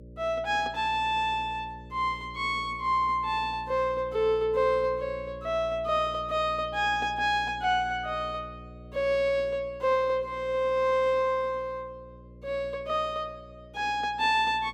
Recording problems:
hum; 60 Hz, harmonics up to 600 Hz, SNR 19 dB

